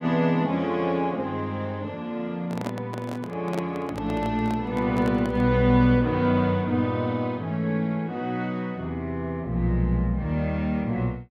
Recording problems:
microphone handling noise; from 2.5 to 5.5 s; peak -4 dB vs average level

